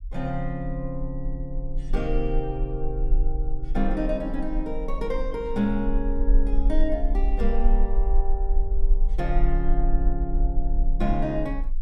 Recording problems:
rumble; below 38 Hz, strongest tone 20 Hz, SNR -2 dB

